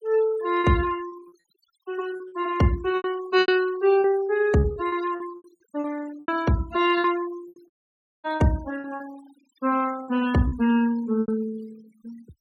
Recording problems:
denoising artefacts; signal-to-artefact ratio 20 dB
packet loss; 12% of the sound replaced, filled with repeated pitch periods
audio cutting out; at 7.5 s for 0.5 s

